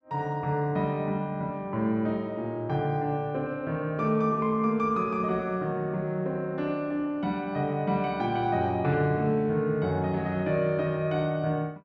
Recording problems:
none

